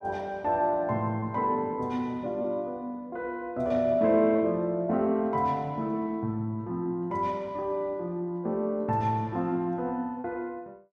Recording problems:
lost packets; 1.3% of the sound replaced, filled with repeated pitch periods

